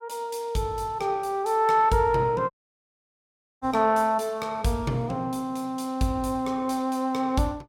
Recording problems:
dropout; at 2.5 s for 1 s

